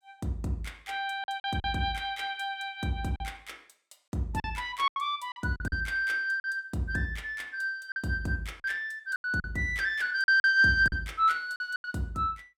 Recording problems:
lost packets; 7% of the sound replaced, filled with silence

